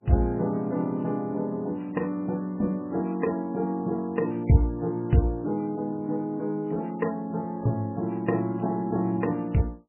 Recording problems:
lossy compression; MP3, log-spectral distance 2 dB, nothing above 2.7 kHz

